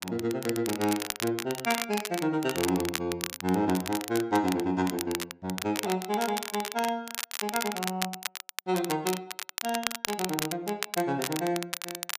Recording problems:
crackling; vinyl, SNR 5 dB

